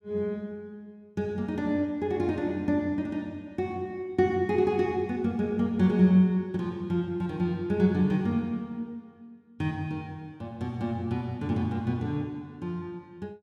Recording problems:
none

